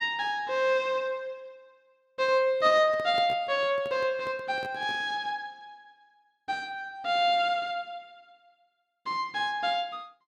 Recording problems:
handling noise; from 2.5 to 5 s; peak -9 dB vs average level

